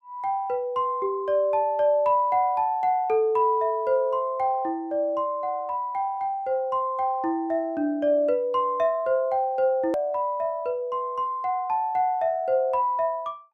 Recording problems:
click at an edit; at 10 s

